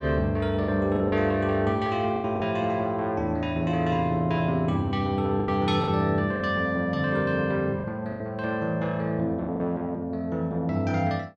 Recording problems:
packet loss; 5% of the sound replaced, filled with the last packet

